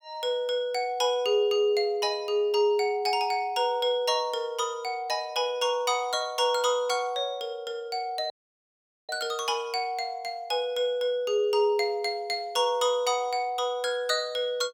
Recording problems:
audio cutting out; at 8.5 s for 1 s

